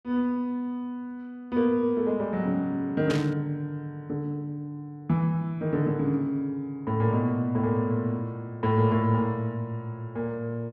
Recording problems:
static burst; at 3 s; peak -3 dB vs average level

